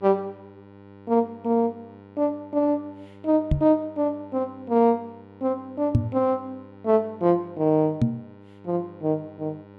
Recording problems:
hum; 50 Hz, harmonics up to 1.9 kHz, SNR 22 dB
microphone bump; at 3.5 s, at 6 s and at 8 s; peak +8 dB vs average level

